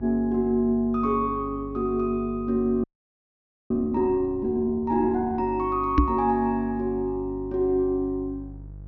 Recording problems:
treble cut off; nothing above 6.4 kHz
hum; 50 Hz, harmonics up to 500 Hz, SNR 16 dB
frozen audio; at 3 s for 1 s
microphone bump; at 6 s; peak +9 dB vs average level

